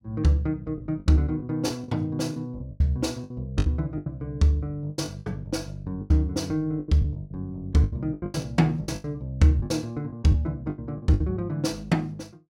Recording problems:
packet loss; 13% of the sound replaced, filled with the last packet

